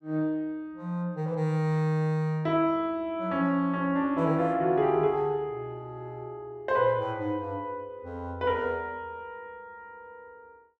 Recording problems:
none

